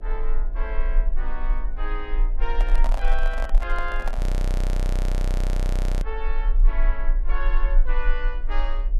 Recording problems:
mains hum; 60 Hz, harmonics up to 720 Hz, SNR 15 dB
low-frequency rumble; below 34 Hz, SNR -8 dB
microphone handling noise; from 2.5 to 4 s; peak +4 dB vs average level
audio freezing; at 4 s for 2 s

